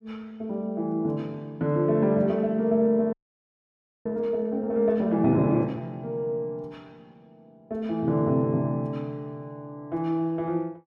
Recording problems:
audio freezing; at 3 s for 1 s

